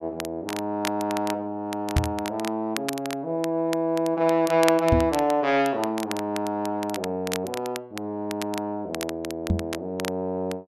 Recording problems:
crackling; vinyl, SNR 11 dB
microphone bump; at 2 s, at 5 s and at 9.5 s; peak +8 dB vs average level

